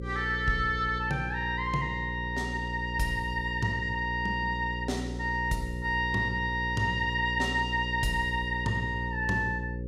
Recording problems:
electrical hum; 60 Hz, harmonics up to 540 Hz, SNR 7 dB

